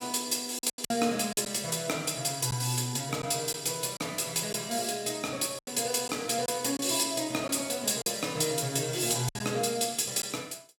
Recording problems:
lost packets; 5% of the sound replaced, filled with silence

